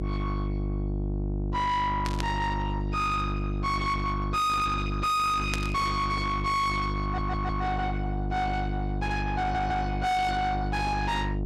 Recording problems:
distorted audio; soft clipping, signal-to-distortion ratio 6 dB
hum; 50 Hz, harmonics up to 1.3 kHz, SNR 3 dB
burst of static; at 2 s and at 5.5 s; peak 0 dB vs average level
audio stuttering; at 7 s and at 9.5 s

